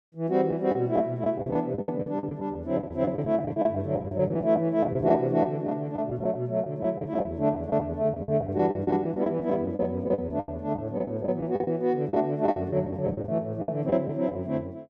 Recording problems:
packet loss; 14% of the sound replaced, filled with the last packet

